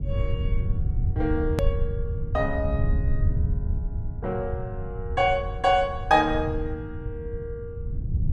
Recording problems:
rumble; below 100 Hz, SNR 3 dB
edit click; at 1.5 s

